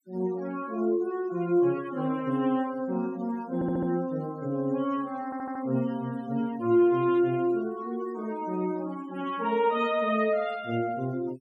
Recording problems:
denoising artefacts; signal-to-artefact ratio 24 dB
audio stuttering; at 3.5 s and at 5.5 s

